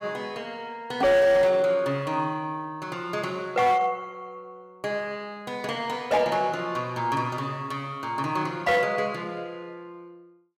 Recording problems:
distortion; hard clipping, signal-to-distortion ratio 10 dB

